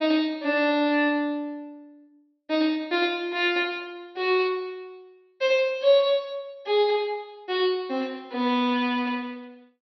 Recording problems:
low-pass filter; nothing above 5.8 kHz

